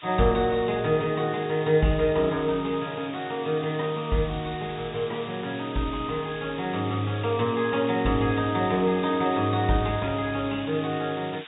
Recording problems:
treble cut off; nothing above 4 kHz
hiss; SNR 16 dB

